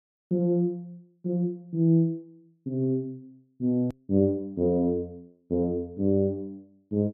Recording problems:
click at an edit; at 4 s

